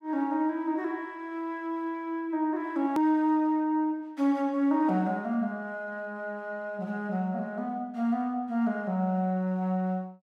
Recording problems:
hard cut with a click; at 3 s

